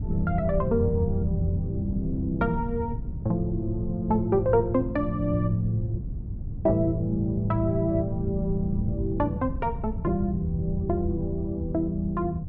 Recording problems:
wind on the microphone; below 130 Hz, SNR 6 dB

